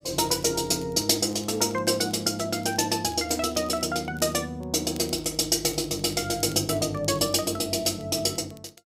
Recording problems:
crackle; vinyl, SNR 27 dB

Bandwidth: 15.5 kHz